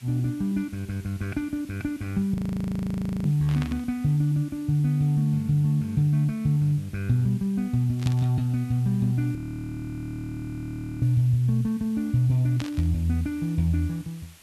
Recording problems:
hiss; slope +1 dB per octave, SNR 26 dB
frozen audio; at 2.5 s for 1 s and at 9.5 s for 1.5 s
burst of static; at 3.5 s, at 8 s and at 13 s; peak -7 dB vs average level

